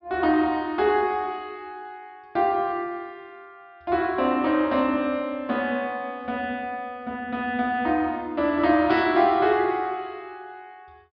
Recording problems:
treble missing; nothing above 5.5 kHz

